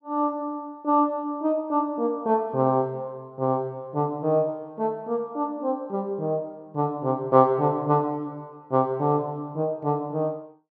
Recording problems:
none

